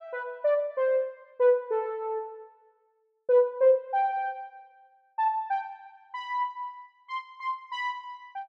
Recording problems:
none

